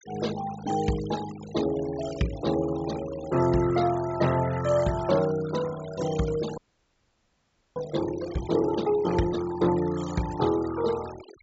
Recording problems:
treble missing; nothing above 8 kHz
noise reduction artefacts; signal-to-artefact ratio 15 dB
frozen audio; at 6.5 s for 1 s

